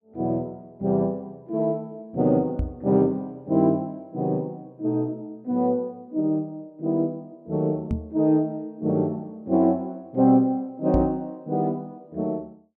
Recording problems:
knock on the microphone; at 2.5 s, at 8 s and at 11 s; peak +3 dB vs average level

